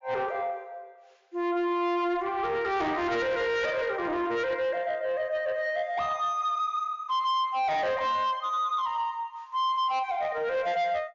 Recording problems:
low-pass filter; nothing above 7.1 kHz
distorted audio; soft clipping, signal-to-distortion ratio 11 dB

